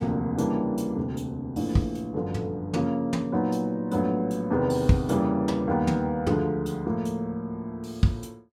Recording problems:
none

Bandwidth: 16 kHz